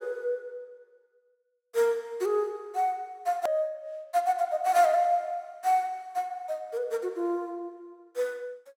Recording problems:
click at an edit; at 3.5 s

